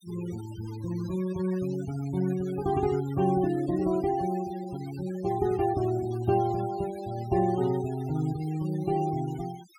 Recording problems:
noise reduction artefacts; signal-to-artefact ratio 17 dB

